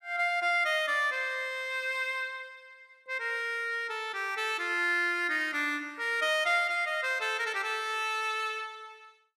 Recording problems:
none

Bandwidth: 14.5 kHz